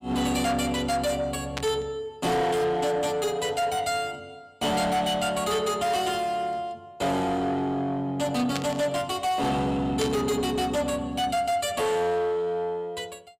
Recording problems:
distorted audio; soft clipping, signal-to-distortion ratio 10 dB
burst of static; at 1.5 s, at 8.5 s and at 10 s; peak -1 dB vs average level

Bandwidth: 15.5 kHz